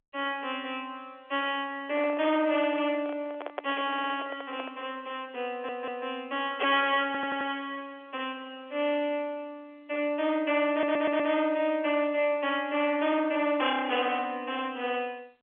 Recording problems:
telephone audio; 370 Hz to 3.6 kHz, G.711
distortion; hard clipping, signal-to-distortion ratio 14 dB
handling noise; from 2 to 5 s; peak -1 dB vs average level
stutter; 4 times, first at 4 s

